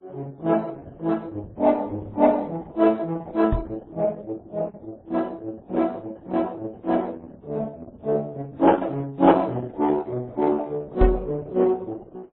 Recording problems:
codec artefacts; Opus, then MP3, log-spectral distance 3 dB, nothing above 3.4 kHz
knock on the microphone; at 3.5 s and at 11 s; peak +5 dB vs average level

